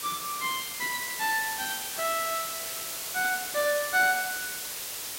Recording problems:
hiss; slope +1 dB per octave, SNR 4 dB

